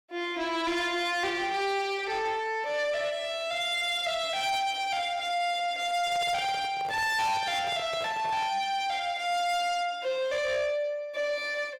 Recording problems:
distorted audio; soft clipping, signal-to-distortion ratio 10 dB
microphone handling noise; from 6 to 8.5 s; peak -8 dB vs average level

